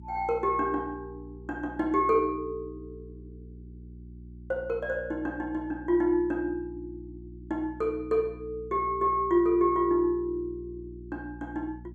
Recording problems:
hum; 60 Hz, harmonics up to 360 Hz, SNR 17 dB

